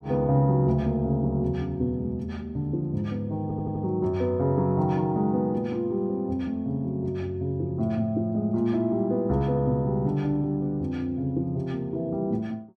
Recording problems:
audio stuttering; at 3.5 s

